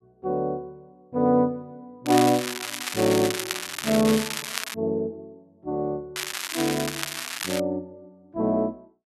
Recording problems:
crackling; from 2 to 4.5 s and from 6 to 7.5 s; loose cable, SNR 5 dB

